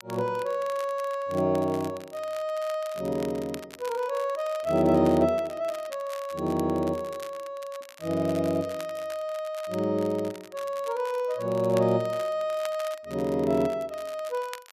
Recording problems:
crackle; vinyl, SNR 19 dB

